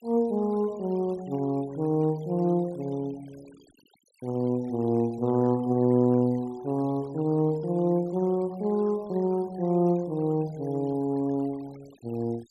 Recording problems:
noise reduction artefacts; signal-to-artefact ratio 26 dB

